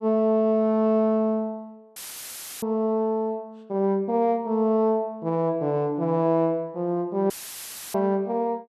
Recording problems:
audio cutting out; at 2 s for 0.5 s and at 7.5 s for 0.5 s; filled with static

